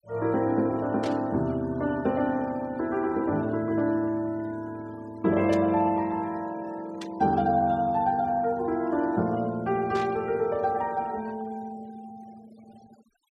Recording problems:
noise reduction artefacts; signal-to-artefact ratio 25 dB
burst of static; 4 times, first at 1 s; peak -9 dB vs average level

